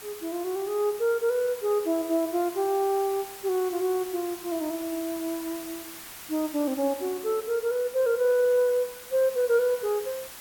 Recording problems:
background hiss; slope 0 dB per octave, SNR 14 dB

